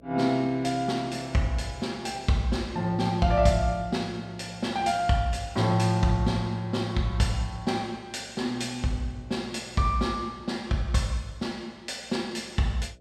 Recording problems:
hum; 60 Hz, harmonics up to 660 Hz, SNR 26 dB

